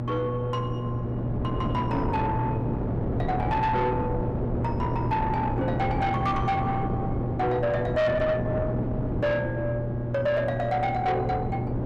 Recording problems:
distorted audio; soft clipping, signal-to-distortion ratio 11 dB
hum; 60 Hz, harmonics up to 840 Hz, SNR 4 dB
wind noise; below 420 Hz, SNR 3 dB

